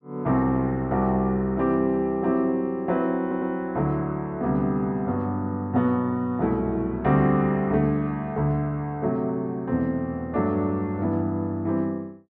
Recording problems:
audio stuttering; at 3 s

